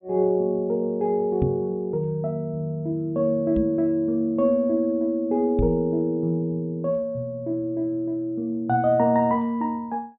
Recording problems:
treble missing; nothing above 4 kHz
knock on the microphone; at 1.5 s, at 3.5 s and at 5.5 s; peak +2 dB vs average level

